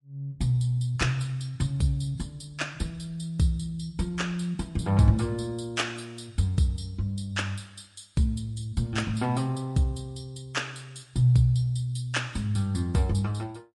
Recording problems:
lossy compression; MP3, log-spectral distance 2 dB, nothing above 11 kHz

